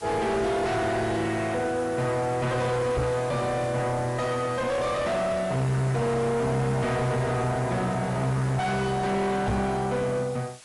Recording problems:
codec artefacts; MP3, log-spectral distance 5 dB, nothing above 11 kHz
distortion; soft clipping, signal-to-distortion ratio 5 dB
background hiss; slope +1 dB per octave, SNR 20 dB
knock on the microphone; at 3 s and at 9.5 s; peak +5 dB vs average level

